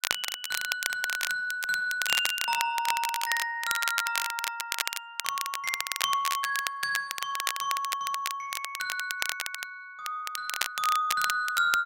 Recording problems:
crackling; vinyl, SNR 2 dB

